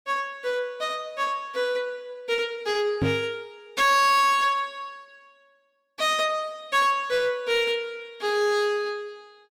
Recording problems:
distorted audio; hard clipping, uneven, signal-to-distortion ratio 10 dB
microphone bump; at 3 s; peak +3 dB vs average level

